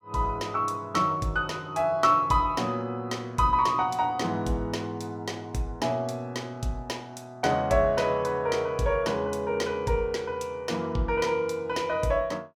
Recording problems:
none

